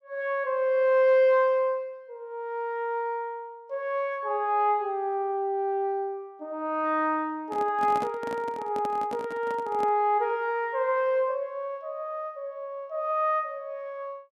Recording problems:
handling noise; from 7.5 to 10 s; peak -5 dB vs average level

